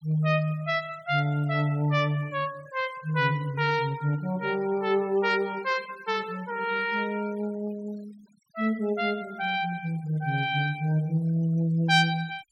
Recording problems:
noise reduction artefacts; signal-to-artefact ratio 23 dB

